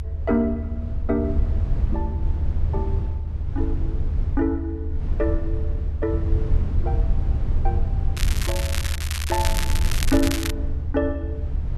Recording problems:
rumble; below 78 Hz, SNR -2 dB
crackling; from 8 to 11 s; loose cable, SNR 2 dB

